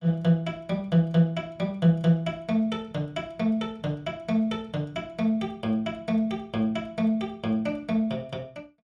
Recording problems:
none

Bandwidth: 14.5 kHz